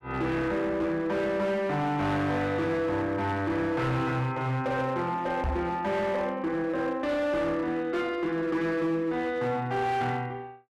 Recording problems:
distortion; hard clipping, signal-to-distortion ratio 11 dB
knock on the microphone; at 5.5 s; peak +1 dB vs average level

